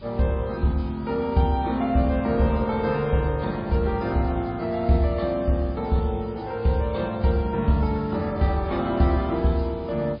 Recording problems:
codec artefacts; MP3, log-spectral distance 5 dB, nothing above 11 kHz
hum; 50 Hz, harmonics up to 500 Hz, SNR 24 dB
background hiss; SNR 27 dB

